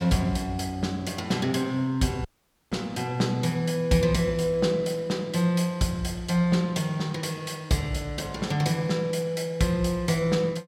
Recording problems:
dropout; at 2.5 s

